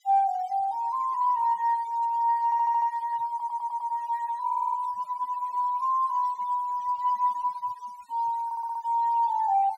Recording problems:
denoising artefacts; signal-to-artefact ratio 27 dB
audio stuttering; 4 times, first at 2.5 s

